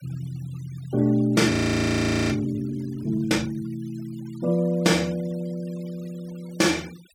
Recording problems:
denoising artefacts; signal-to-artefact ratio 22 dB
audio freezing; at 1.5 s for 1 s

